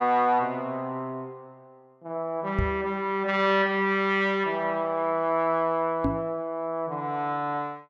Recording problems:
knock on the microphone; at 2.5 s and at 6 s; peak +3 dB vs average level

